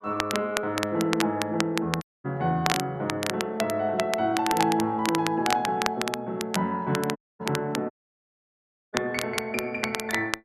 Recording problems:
crackling; vinyl, SNR 5 dB
audio cutting out; at 2 s, at 7 s and at 8 s for 1 s

